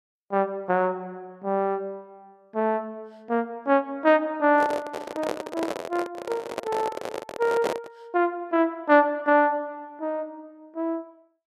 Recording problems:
microphone handling noise; from 4.5 to 8 s; peak +2 dB vs average level

